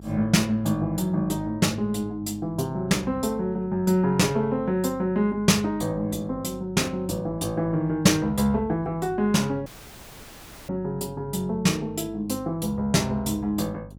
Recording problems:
hum; 50 Hz, harmonics up to 550 Hz, SNR 19 dB
dropout; at 9.5 s for 1 s

